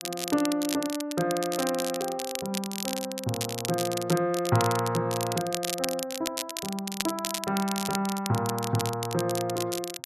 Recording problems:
crackling; vinyl, SNR 5 dB

